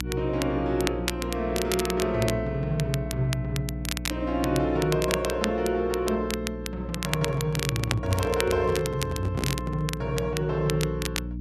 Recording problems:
hum; 60 Hz, harmonics up to 300 Hz, SNR 8 dB
crackling; vinyl, SNR 7 dB
microphone handling noise; from 7 to 10 s; peak -1 dB vs average level

